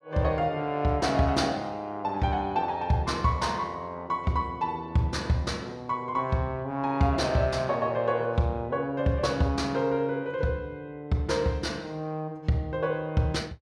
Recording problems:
none

